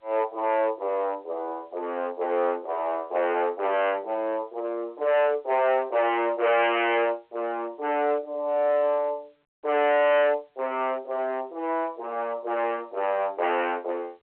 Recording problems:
phone line; 370 Hz to 3.1 kHz, G.711
distorted audio; hard clipping, signal-to-distortion ratio 7 dB

